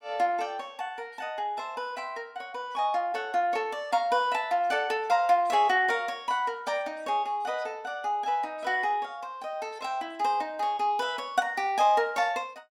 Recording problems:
none

